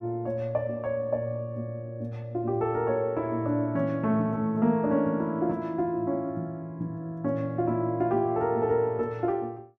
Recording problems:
none

